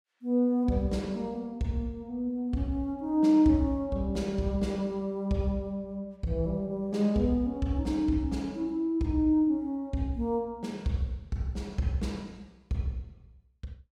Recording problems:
none

